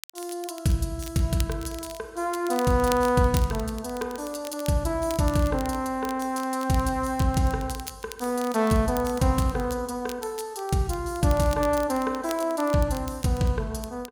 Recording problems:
crackle; vinyl, SNR 17 dB

